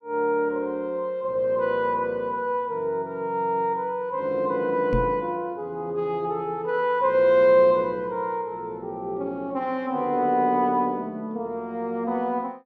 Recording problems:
microphone bump; at 5 s; peak +2 dB vs average level

